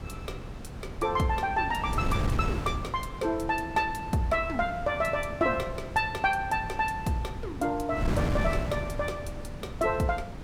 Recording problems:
wind noise; below 260 Hz, SNR 6 dB

